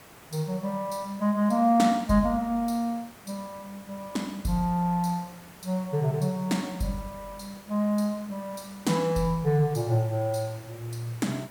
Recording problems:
background hiss; slope -4 dB per octave, SNR 21 dB

